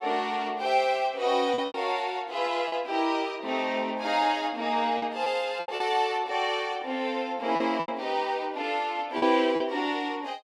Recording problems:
lost packets; 5% of the sound replaced, filled with repeated pitch periods

